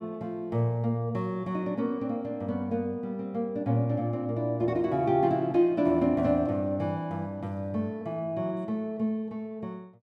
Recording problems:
none

